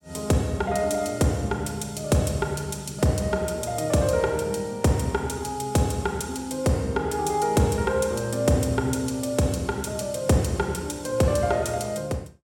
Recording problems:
none

